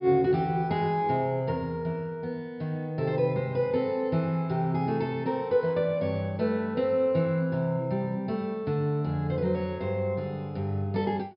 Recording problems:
low-pass filter; nothing above 5.5 kHz

